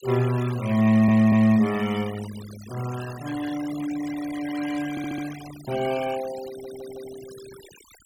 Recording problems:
noise reduction artefacts; signal-to-artefact ratio 17 dB
stutter; at 1 s, at 5 s and at 6.5 s

